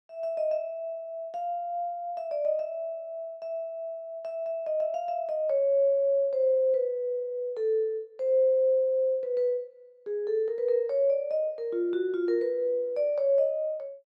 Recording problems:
none

